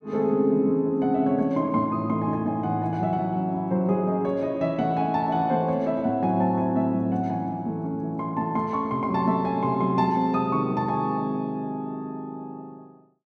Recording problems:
none

